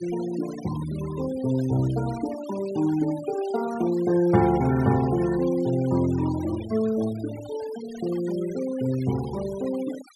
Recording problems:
denoising artefacts; signal-to-artefact ratio 16 dB

